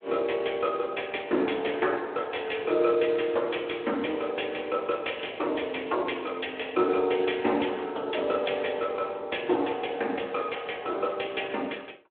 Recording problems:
telephone audio; 280 Hz to 3.5 kHz, Speex

